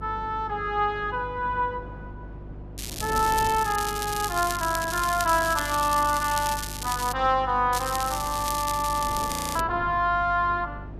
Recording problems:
hum; 50 Hz, harmonics up to 350 Hz, SNR 15 dB
wind on the microphone; below 520 Hz, SNR 17 dB
crackling; from 3 to 7 s and from 7.5 to 9.5 s; loose cable, SNR 8 dB
frozen audio; at 9.5 s

